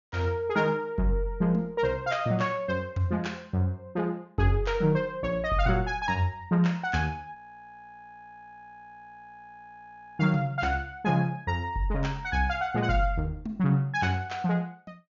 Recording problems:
low-pass filter; nothing above 7.1 kHz
audio freezing; at 7.5 s for 3 s

